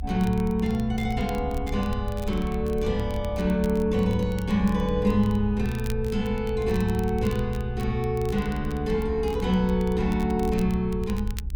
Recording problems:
rumble; below 70 Hz, SNR 8 dB
crackle; vinyl, SNR 22 dB

